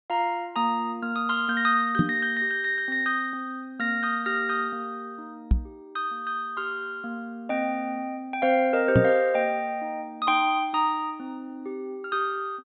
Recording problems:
low-pass filter; nothing above 4 kHz
knock on the microphone; at 2 s, at 5.5 s and at 9 s; peak +9 dB vs average level

